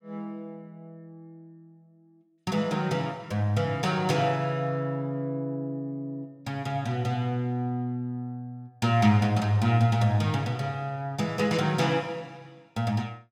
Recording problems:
none

